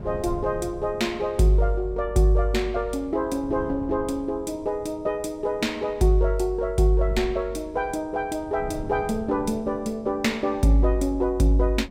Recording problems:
wind noise; below 180 Hz, SNR 17 dB

